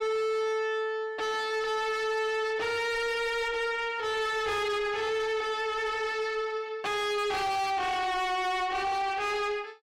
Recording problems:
distorted audio; soft clipping, signal-to-distortion ratio 6 dB

